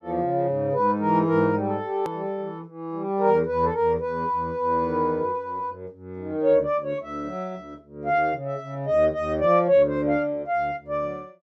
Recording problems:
hard cut with a click; at 2 s

